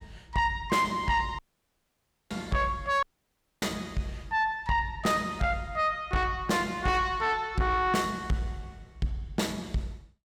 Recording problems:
distortion; soft clipping, signal-to-distortion ratio 8 dB
dropout; at 1.5 s for 1 s and at 3 s for 0.5 s

